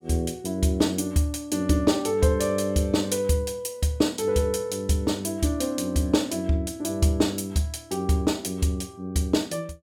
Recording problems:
none

